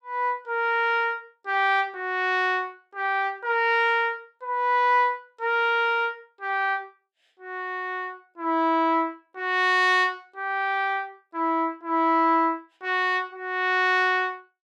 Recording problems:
none

